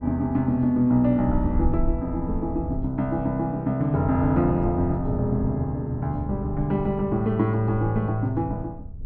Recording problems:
wind on the microphone; below 86 Hz, SNR 11 dB

